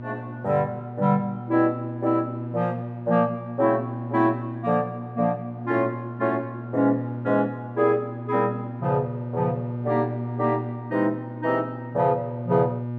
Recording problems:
hum; 60 Hz, harmonics up to 960 Hz, SNR 8 dB

